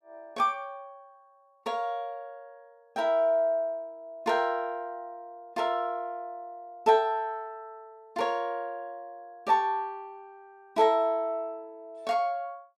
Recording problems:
none

